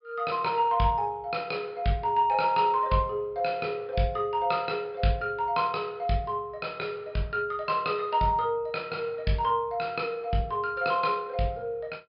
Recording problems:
treble cut off; nothing above 5.5 kHz

